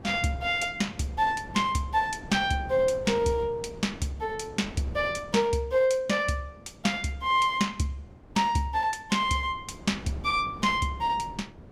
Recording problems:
wind noise; below 410 Hz, SNR 18 dB

